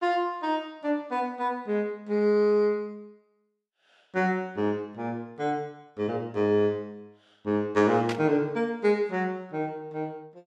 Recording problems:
static burst; at 8 s; peak -2 dB vs average level

